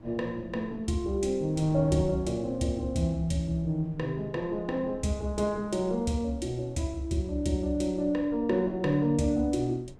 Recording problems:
wind noise; below 230 Hz, SNR 19 dB

